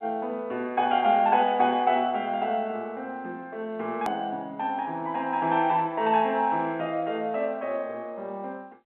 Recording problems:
phone line; 240 Hz to 3.3 kHz, G.711
edit click; at 4 s

